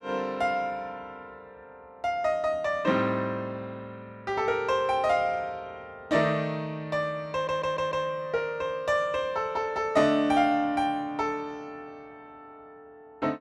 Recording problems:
audio stuttering; at 7.5 s

